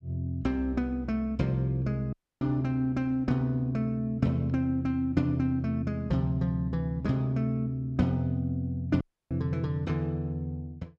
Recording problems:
dropout; at 2 s and at 9 s

